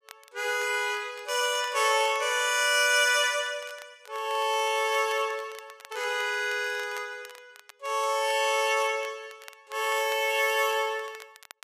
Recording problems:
crackling; vinyl, SNR 24 dB

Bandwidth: 14.5 kHz